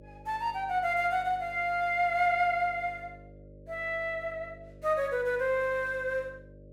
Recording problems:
mains hum; 50 Hz, harmonics up to 600 Hz, SNR 22 dB

